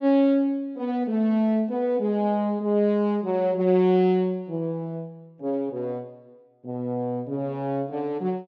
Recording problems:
none

